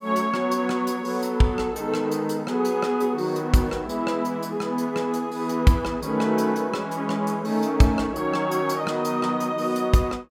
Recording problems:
none

